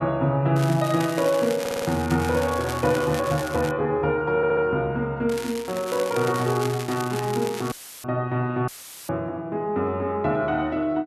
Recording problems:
crackling; from 0.5 to 3.5 s and from 5.5 to 7.5 s; loose cable, SNR 12 dB
audio stuttering; at 1.5 s and at 4.5 s
dropout; at 7.5 s and at 8.5 s; filled with static

